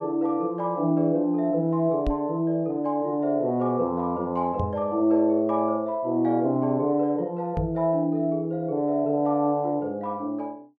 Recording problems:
microphone bump; at 2 s, at 4.5 s and at 7.5 s; peak 0 dB vs average level

